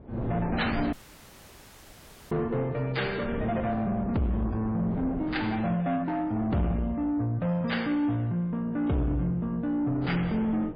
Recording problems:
codec artefacts; MP3, log-spectral distance 2 dB, nothing above 11.3 kHz
distortion; soft clipping, signal-to-distortion ratio 10 dB
wind on the microphone; below 430 Hz, SNR 9 dB
audio cutting out; at 1 s for 1.5 s

